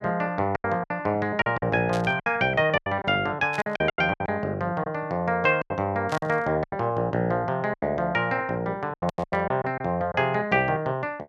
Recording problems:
lost packets; 11% of the sound replaced, filled with silence
static burst; 4 times, first at 2 s; peak -7 dB vs average level

